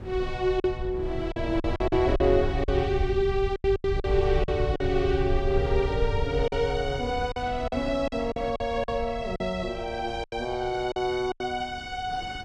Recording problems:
low-frequency rumble; below 86 Hz, SNR 7 dB
wind noise; below 580 Hz, SNR 18 dB
packet loss; 9% of the sound replaced, filled with silence

